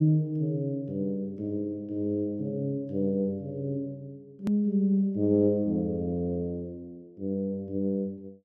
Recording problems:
click at an edit; at 4.5 s

